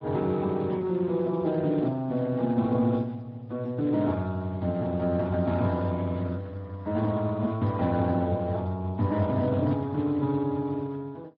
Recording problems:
low-pass filter; nothing above 5.5 kHz
lossy compression; Speex, log-spectral distance 2 dB

